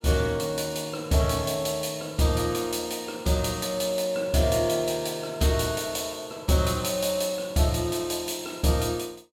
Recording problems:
none

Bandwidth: 16 kHz